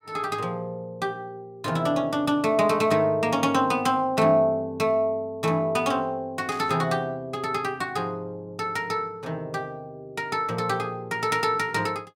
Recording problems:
static burst; at 6.5 s; peak -12 dB vs average level

